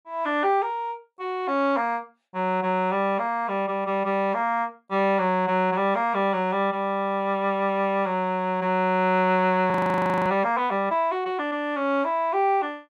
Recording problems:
audio freezing; at 9.5 s for 0.5 s

